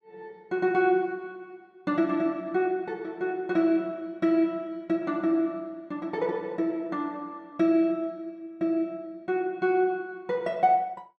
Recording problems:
none

